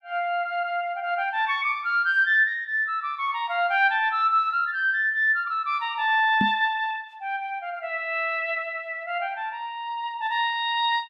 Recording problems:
microphone thump; at 6.5 s; peak +2 dB vs average level

